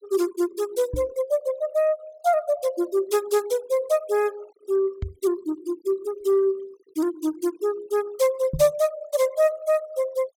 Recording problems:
denoising artefacts; signal-to-artefact ratio 21 dB
microphone bump; at 1 s, at 5 s and at 8.5 s; peak 0 dB vs average level

